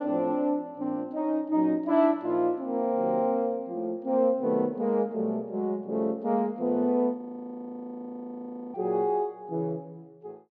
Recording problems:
audio freezing; at 7 s for 1.5 s

